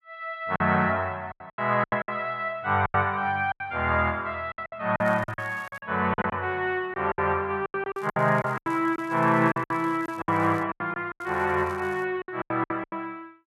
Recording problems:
lost packets; 15% of the sound replaced, filled with silence
crackling; at 5 s, from 8 to 11 s and at 11 s; loose cable, SNR 28 dB

